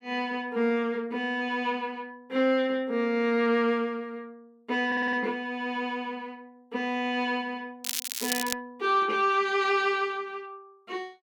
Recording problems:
audio stuttering; at 5 s
crackle; at 8 s; loose cable, SNR 3 dB

